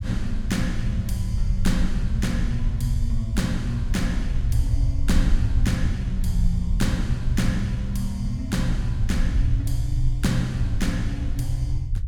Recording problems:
rumble; below 74 Hz, SNR 0 dB

